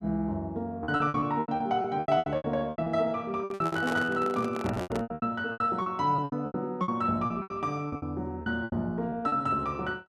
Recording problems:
lost packets; 19% of the sound replaced, filled with repeated pitch periods
microphone handling noise; from 3.5 to 5 s; peak 0 dB vs average level

